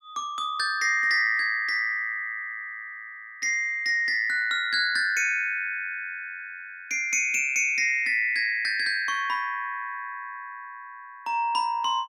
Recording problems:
none

